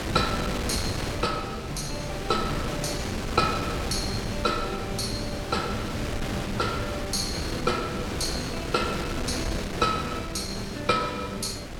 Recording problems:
wind on the microphone; below 1.4 kHz, SNR 3 dB

